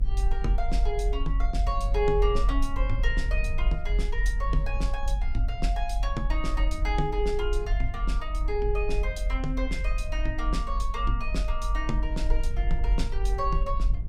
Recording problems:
low-frequency rumble; below 46 Hz, strongest tone 42 Hz, SNR -3 dB

